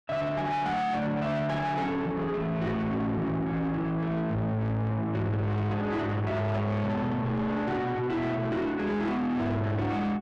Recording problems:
distortion; soft clipping, signal-to-distortion ratio 6 dB

